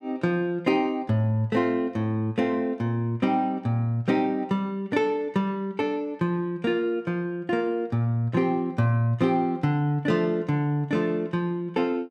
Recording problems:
none

